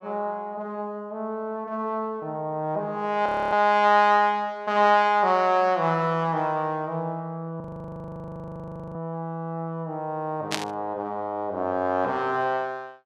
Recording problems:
frozen audio; at 3.5 s and at 7.5 s for 1.5 s
static burst; at 11 s; peak +2 dB vs average level

